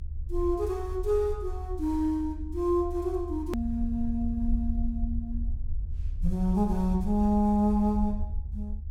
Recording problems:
rumble; below 72 Hz, SNR 6 dB
hard cut with a click; at 3.5 s

